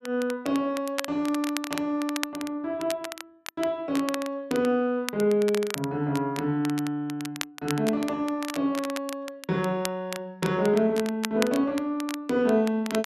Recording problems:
crackling; vinyl, SNR 11 dB

